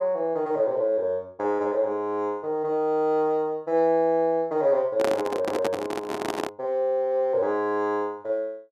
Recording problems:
handling noise; from 5 to 6.5 s; peak +1 dB vs average level

